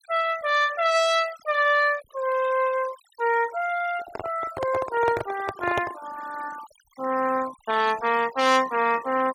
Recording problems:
noise reduction artefacts; signal-to-artefact ratio 16 dB
handling noise; from 4 to 6 s; peak 0 dB vs average level

